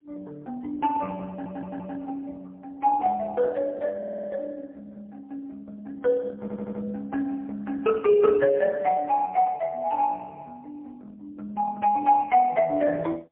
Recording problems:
telephone audio; 220 Hz to 2.7 kHz, AMR-NB, then MP3
audio stuttering; at 1.5 s, at 4 s and at 6.5 s

